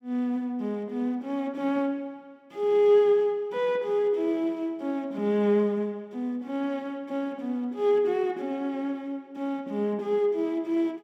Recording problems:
none

